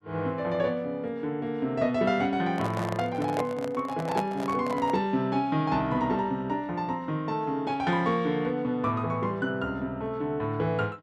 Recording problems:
handling noise; from 2.5 to 5 s; peak +1 dB vs average level

